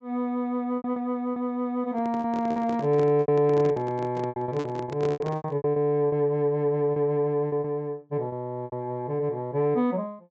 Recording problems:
treble missing; nothing above 8 kHz
packet loss; 11% of the sound replaced, filled with repeated pitch periods
handling noise; from 2 to 5.5 s; peak -4 dB vs average level

